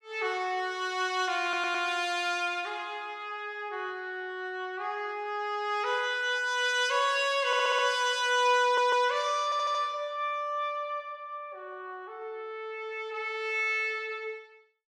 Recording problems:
stutter; 4 times, first at 1.5 s

